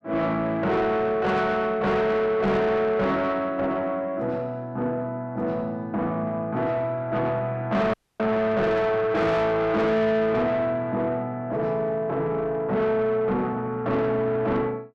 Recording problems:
distorted audio; soft clipping, signal-to-distortion ratio 7 dB
dropout; at 8 s

